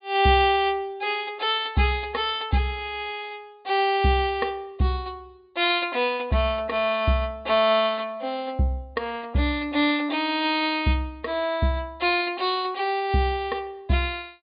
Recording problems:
low-pass filter; nothing above 4.8 kHz

